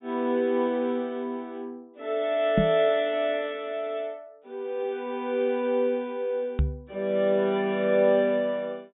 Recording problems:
treble missing; nothing above 4 kHz
knock on the microphone; at 2.5 s and at 6.5 s; peak +5 dB vs average level

